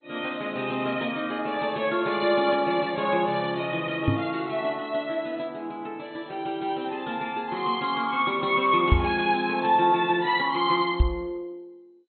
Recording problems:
codec artefacts; MP2, log-spectral distance 3 dB, nothing above 4.1 kHz
microphone thump; at 4 s, at 9 s and at 11 s; peak +9 dB vs average level

